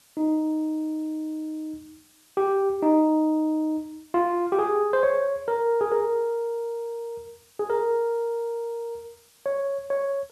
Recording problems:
background hiss; slope +1 dB per octave, SNR 30 dB

